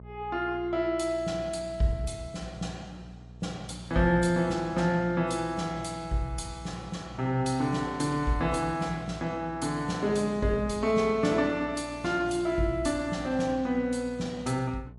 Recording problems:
lossy compression; MP3, log-spectral distance 2 dB, nothing above 11 kHz
electrical hum; 60 Hz, harmonics up to 660 Hz, SNR 18 dB

